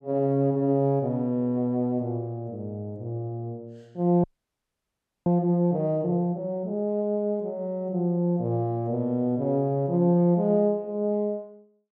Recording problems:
audio freezing; at 4 s for 1 s

